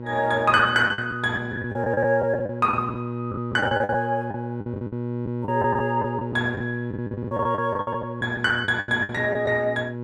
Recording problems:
hum; 60 Hz, harmonics up to 1.1 kHz, SNR 8 dB
lost packets; 14% of the sound replaced, filled with the last packet

